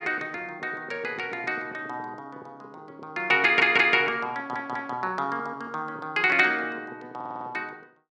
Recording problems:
stutter; at 3.5 s, at 4.5 s and at 7 s

